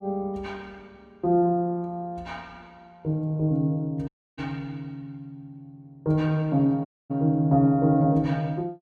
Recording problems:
dropout; at 4 s and at 7 s

